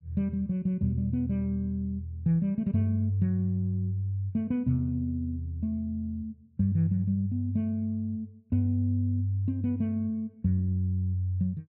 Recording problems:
none

